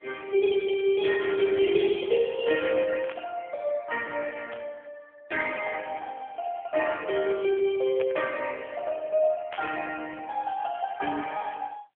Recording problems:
phone line; 320 Hz to 3.1 kHz, AMR-NB
burst of static; 4 times, first at 3 s; peak -8 dB vs average level

